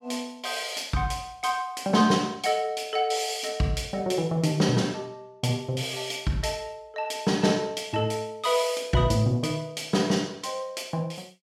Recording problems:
none

